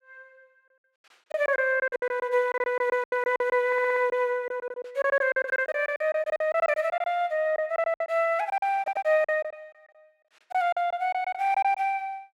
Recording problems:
lost packets; 16% of the sound replaced, filled with silence
stutter; at 3.5 s and at 9 s

